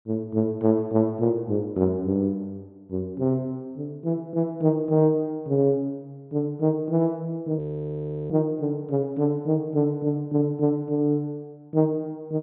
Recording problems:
treble cut off; nothing above 4 kHz
audio freezing; at 7.5 s for 0.5 s

